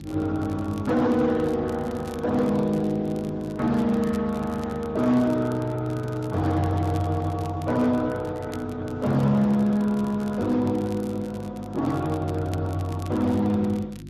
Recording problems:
codec artefacts; Speex, log-spectral distance 2 dB
distorted audio; hard clipping, signal-to-distortion ratio 12 dB
hum; 50 Hz, harmonics up to 350 Hz, SNR 15 dB
crackle; vinyl, SNR 25 dB

